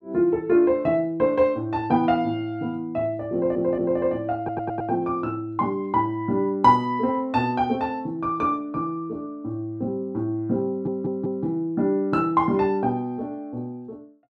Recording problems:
stutter; at 3.5 s, at 4.5 s and at 11 s

